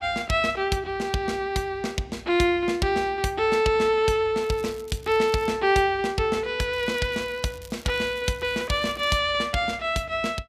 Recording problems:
crackling; from 4.5 to 5.5 s and from 6.5 to 9 s; loose cable, SNR 24 dB

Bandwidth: 14.5 kHz